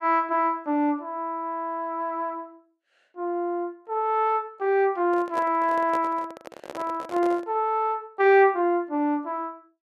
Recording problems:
microphone handling noise; from 5 to 7.5 s; peak -7 dB vs average level

